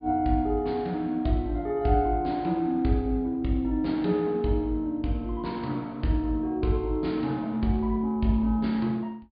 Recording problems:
treble cut off; nothing above 4.9 kHz

